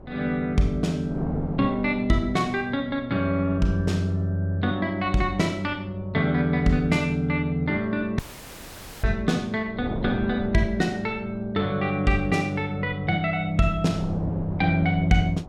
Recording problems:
wind on the microphone; below 410 Hz, SNR 15 dB
audio cutting out; at 8 s for 1 s

